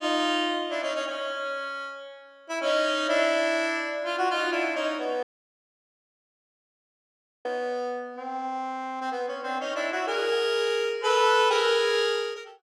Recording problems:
audio cutting out; at 5 s for 2 s

